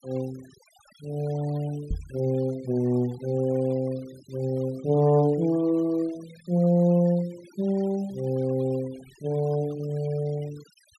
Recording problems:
denoising artefacts; signal-to-artefact ratio 24 dB
microphone bump; at 2 s; peak -2 dB vs average level

